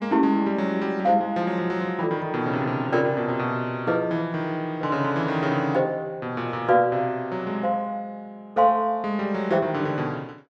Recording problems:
none

